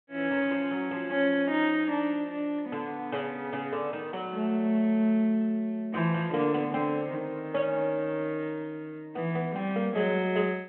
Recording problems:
phone line; 170 Hz to 3.4 kHz, G.726

